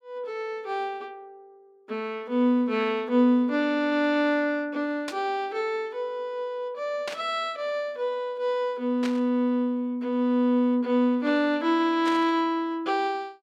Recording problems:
static burst; 4 times, first at 5 s; peak -4 dB vs average level

